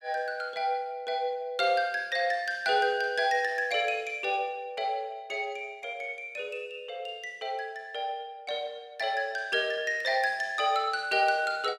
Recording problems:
none

